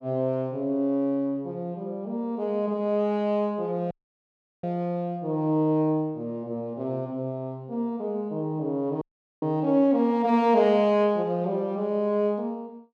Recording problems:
dropout; at 4 s for 0.5 s and at 9 s

